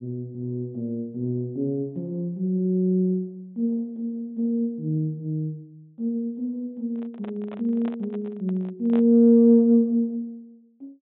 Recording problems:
treble cut off; nothing above 3.8 kHz
handling noise; from 7 to 9 s; peak -9 dB vs average level

